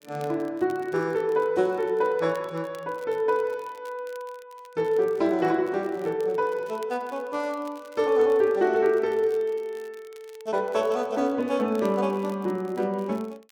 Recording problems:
crackle; vinyl, SNR 28 dB

